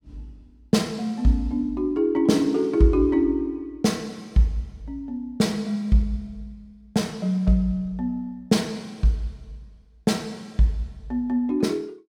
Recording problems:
none

